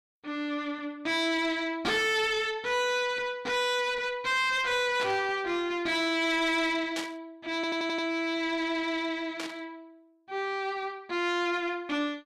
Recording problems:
distortion; soft clipping, signal-to-distortion ratio 7 dB
static burst; at 5 s, at 7 s and at 9.5 s; peak -3 dB vs average level
audio stuttering; at 7.5 s

